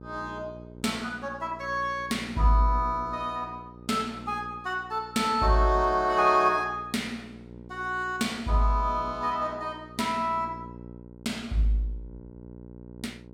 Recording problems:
hum; 60 Hz, harmonics up to 960 Hz, SNR 18 dB

